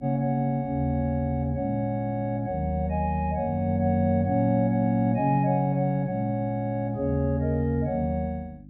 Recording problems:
hum; 50 Hz, harmonics up to 300 Hz, SNR 20 dB

